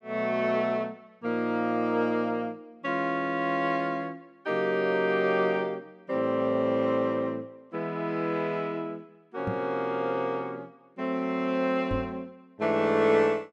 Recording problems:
microphone thump; at 9.5 s and at 12 s; peak -2 dB vs average level

